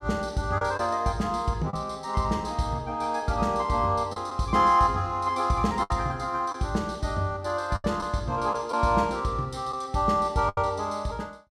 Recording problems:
packet loss; 4% of the sound replaced, filled with the last packet

